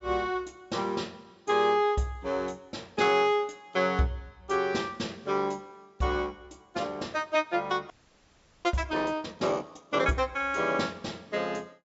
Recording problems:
treble missing; nothing above 8 kHz
audio freezing; at 8 s for 1 s

